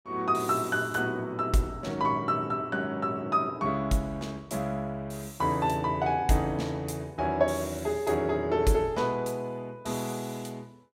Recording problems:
none

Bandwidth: 16 kHz